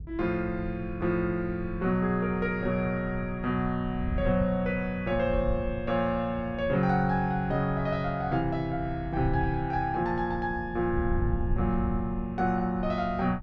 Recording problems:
wind on the microphone; below 100 Hz, SNR 9 dB

